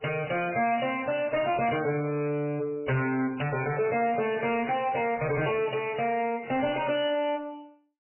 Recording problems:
codec artefacts; MP3, log-spectral distance 6 dB, nothing above 2.8 kHz
distortion; soft clipping, signal-to-distortion ratio 10 dB

